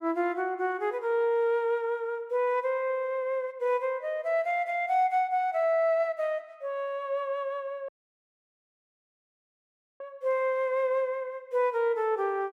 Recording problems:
audio cutting out; at 8 s for 2 s

